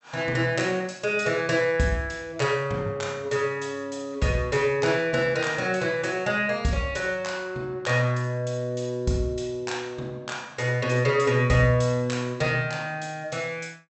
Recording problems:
treble cut off; nothing above 7.9 kHz

